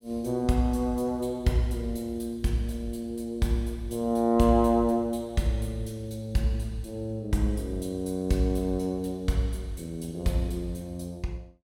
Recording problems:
none

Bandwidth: 16.5 kHz